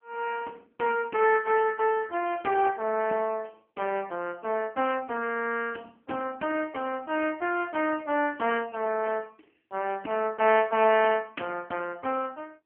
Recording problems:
telephone audio; 240 Hz to 3.1 kHz, AMR-NB

